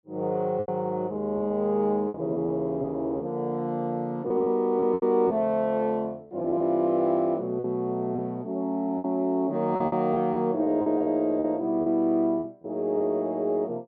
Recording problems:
packet loss; 7% of the sound replaced, filled with repeated pitch periods

